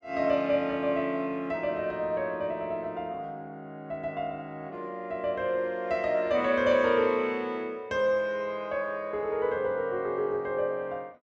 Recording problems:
none

